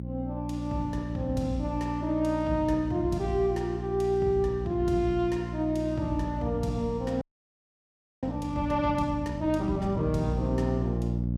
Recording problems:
hum; 60 Hz, harmonics up to 540 Hz, SNR 5 dB
frozen audio; at 7 s for 1 s

